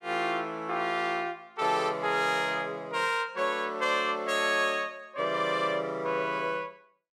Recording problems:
none

